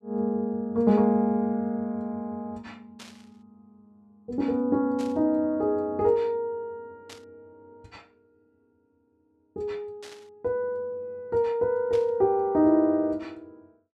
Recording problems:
burst of static; 5 times, first at 3 s; peak -14 dB vs average level

